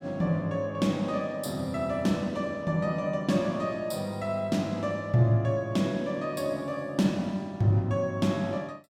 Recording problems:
none

